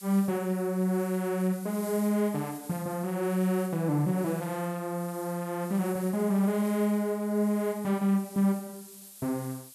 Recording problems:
hiss; slope +3 dB per octave, SNR 17 dB

